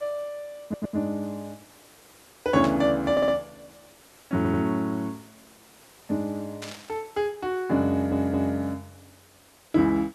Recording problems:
background hiss; slope -3 dB per octave, SNR 26 dB
stutter; 4 times, first at 0.5 s
static burst; at 2.5 s and at 6.5 s; peak -7 dB vs average level

